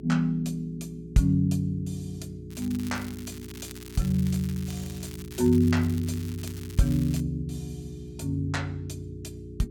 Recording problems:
hum; 60 Hz, harmonics up to 420 Hz, SNR 15 dB
crackling; from 2.5 to 7 s; loose cable, SNR 17 dB

